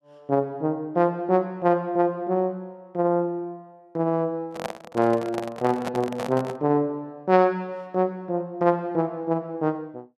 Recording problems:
microphone handling noise; from 4.5 to 6.5 s; peak -1 dB vs average level

